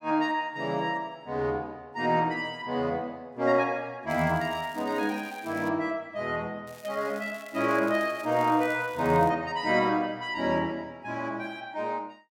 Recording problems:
crackle; from 4 to 5.5 s and from 6.5 to 9.5 s; loose cable, SNR 22 dB

